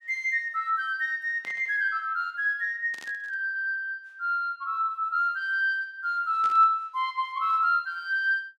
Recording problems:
burst of static; at 1.5 s, at 3 s and at 6.5 s; peak -13 dB vs average level

